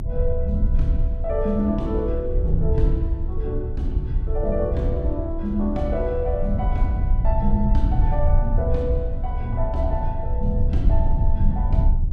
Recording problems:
rumble; below 72 Hz, SNR -2 dB

